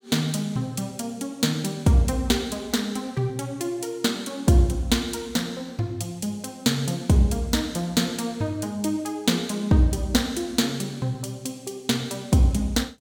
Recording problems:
none

